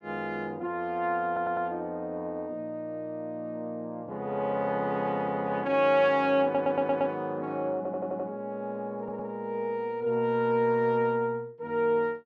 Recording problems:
audio stuttering; 4 times, first at 1.5 s

